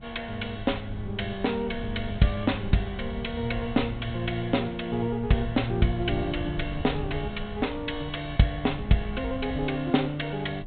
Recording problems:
treble missing; nothing above 4 kHz
wind on the microphone; below 120 Hz, SNR 11 dB

